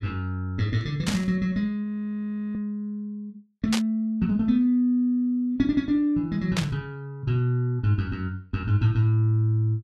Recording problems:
static burst; at 1 s, at 3.5 s and at 6.5 s; peak +2 dB vs average level
audio freezing; at 2 s for 0.5 s

